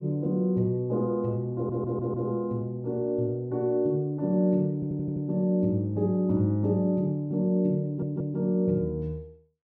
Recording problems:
stutter; at 1.5 s, at 4.5 s and at 8 s

